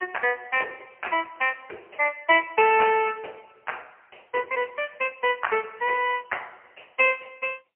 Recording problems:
telephone audio; 340 Hz to 3.1 kHz, AMR-NB, then MP3

